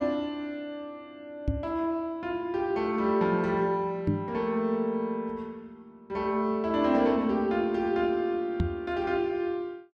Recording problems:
microphone bump; at 1.5 s, at 4 s and at 8.5 s; peak +5 dB vs average level

